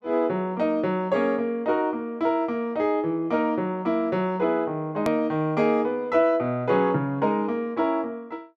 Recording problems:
hard cut with a click; at 5 s

